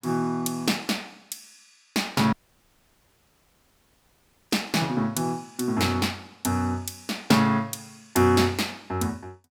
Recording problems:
dropout; at 2.5 s for 2 s

